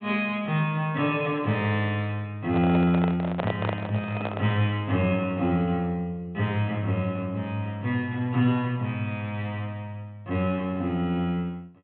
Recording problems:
low-pass filter; nothing above 4 kHz
microphone handling noise; from 2.5 to 4.5 s; peak +1 dB vs average level

